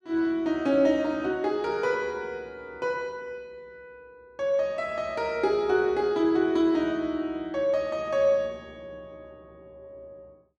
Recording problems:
none

